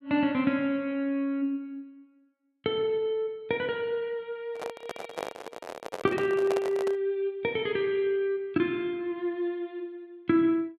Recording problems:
microphone handling noise; from 4.5 to 7 s; peak 0 dB vs average level

